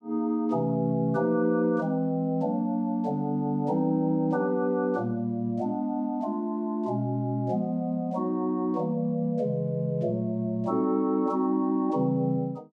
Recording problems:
none

